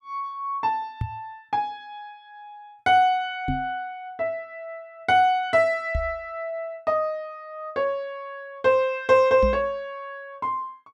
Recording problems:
microphone thump; 4 times, first at 1 s; peak 0 dB vs average level

